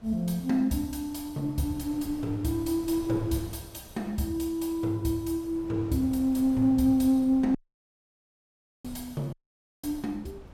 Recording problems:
wind noise; below 400 Hz, SNR 19 dB
dropout; at 7.5 s for 1.5 s and at 9.5 s for 0.5 s

